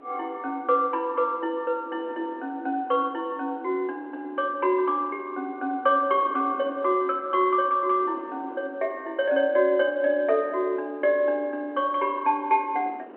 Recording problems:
phone line; 220 Hz to 3.1 kHz, G.711
wind on the microphone; below 660 Hz, SNR 22 dB

